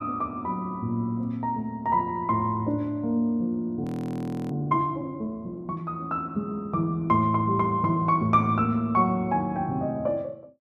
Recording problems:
frozen audio; at 4 s for 0.5 s

